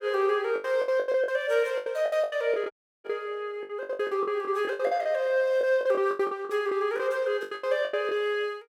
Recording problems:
lost packets; 19% of the sound replaced, filled with the last packet
dropout; at 2.5 s

